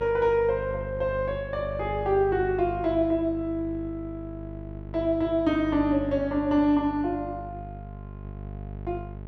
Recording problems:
hum; 50 Hz, harmonics up to 850 Hz, SNR 12 dB

